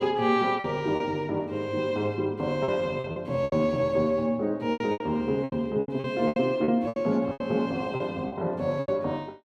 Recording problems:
packet loss; 12% of the sound replaced, filled with repeated pitch periods

